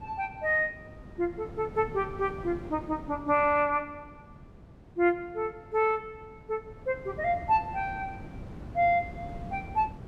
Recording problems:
wind noise; below 330 Hz, SNR 16 dB

